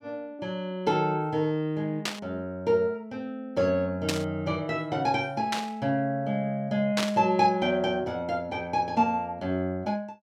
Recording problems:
burst of static; 4 times, first at 2 s; peak +3 dB vs average level

